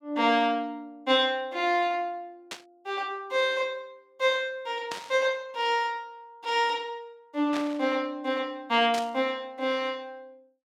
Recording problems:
static burst; 4 times, first at 2.5 s; peak -4 dB vs average level

